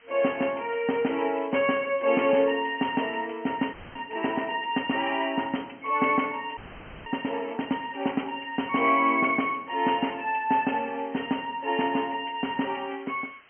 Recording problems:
treble cut off; nothing above 3.2 kHz
background hiss; SNR 27 dB
frozen audio; at 3.5 s and at 6.5 s

